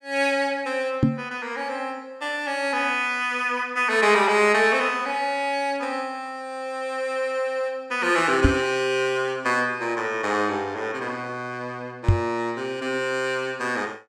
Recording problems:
knock on the microphone; at 1 s, at 8.5 s and at 12 s; peak +8 dB vs average level

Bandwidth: 15.5 kHz